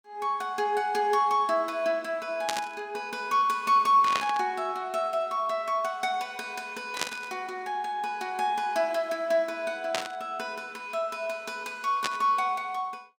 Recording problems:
burst of static; 5 times, first at 2.5 s; peak +4 dB vs average level

